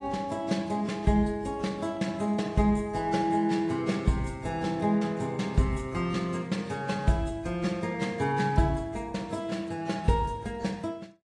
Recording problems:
codec artefacts; AAC, log-spectral distance 2 dB, nothing above 10.1 kHz

